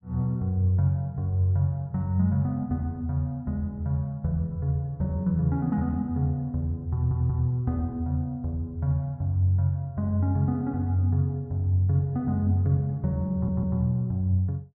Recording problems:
stutter; at 7 s and at 13 s

